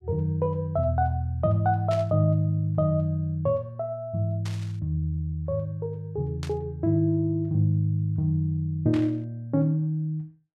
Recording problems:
static burst; 4 times, first at 2 s; peak -9 dB vs average level

